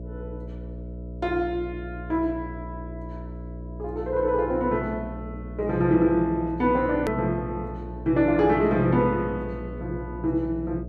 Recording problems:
hum; 60 Hz, harmonics up to 660 Hz, SNR 12 dB
edit click; at 7 s

